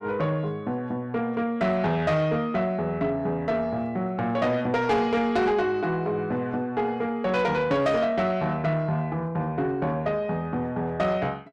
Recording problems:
distortion; soft clipping, signal-to-distortion ratio 12 dB

